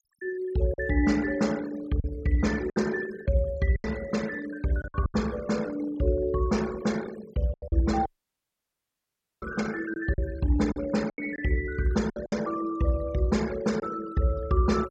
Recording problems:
noise reduction artefacts; signal-to-artefact ratio 18 dB
packet loss; 6% of the sound replaced, filled with silence
dropout; at 8 s for 1.5 s

